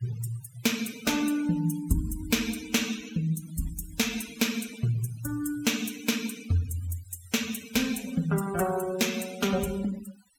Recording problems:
denoising artefacts; signal-to-artefact ratio 14 dB

